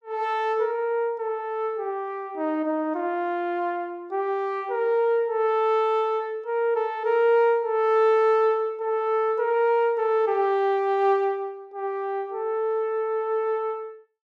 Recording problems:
none

